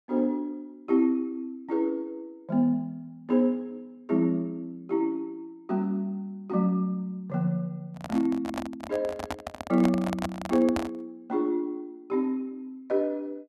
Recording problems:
microphone handling noise; from 8 to 11 s; peak +2 dB vs average level

